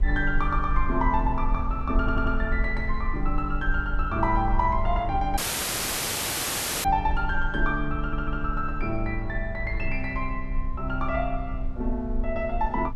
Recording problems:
rumble; below 50 Hz, SNR 4 dB
audio stuttering; at 2 s and at 8 s
audio cutting out; at 5.5 s for 1.5 s

